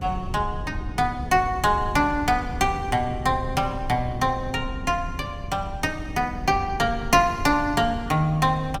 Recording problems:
wind noise; below 130 Hz, SNR 11 dB

